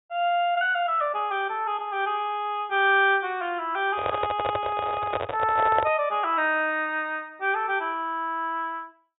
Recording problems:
treble cut off; nothing above 4 kHz
handling noise; from 4 to 6 s; peak +3 dB vs average level

